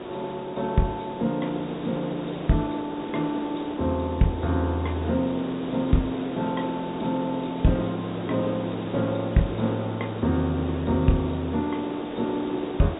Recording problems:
low-pass filter; nothing above 4 kHz
background hiss; SNR 8 dB

